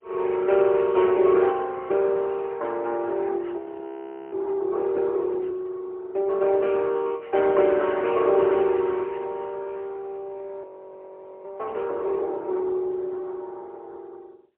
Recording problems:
telephone audio; 280 Hz to 3.1 kHz, AMR-NB, then MP3
frozen audio; at 3.5 s for 0.5 s and at 11 s for 1 s

